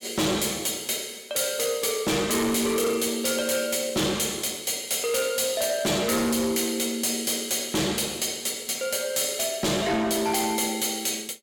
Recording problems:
distortion; hard clipping, signal-to-distortion ratio 8 dB

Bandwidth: 17 kHz